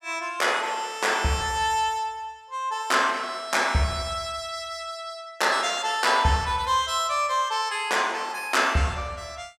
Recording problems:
none

